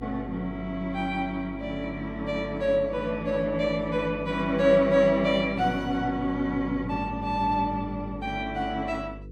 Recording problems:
hum; 50 Hz, harmonics up to 500 Hz, SNR 15 dB

